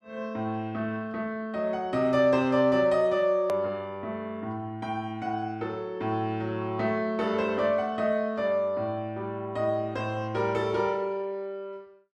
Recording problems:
click at an edit; at 3.5 s

